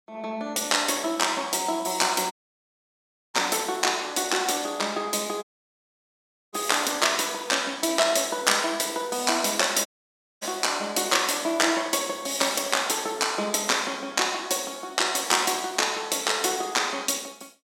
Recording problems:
dropout; at 2.5 s for 1 s, at 5.5 s for 1 s and at 10 s for 0.5 s

